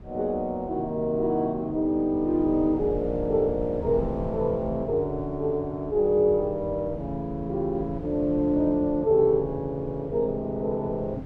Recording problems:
wind on the microphone; below 190 Hz, SNR 14 dB

